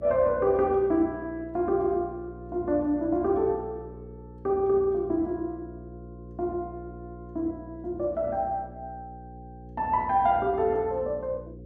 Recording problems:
hum; 60 Hz, harmonics up to 540 Hz, SNR 17 dB

